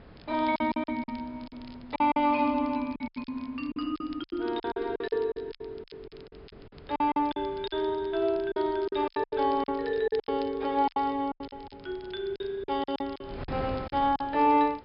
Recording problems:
low-pass filter; nothing above 5.5 kHz
wind noise; below 580 Hz, SNR 19 dB
crackle; vinyl, SNR 27 dB
packet loss; 15% of the sound replaced, filled with silence

